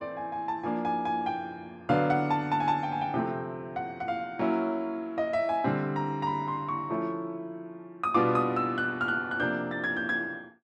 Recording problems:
none

